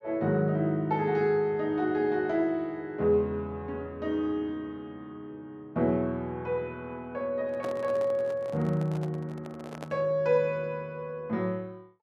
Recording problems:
handling noise; from 7.5 to 10 s; peak -6 dB vs average level

